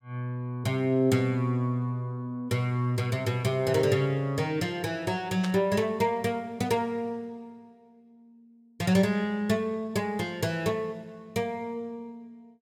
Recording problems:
static burst; at 5.5 s; peak -4 dB vs average level

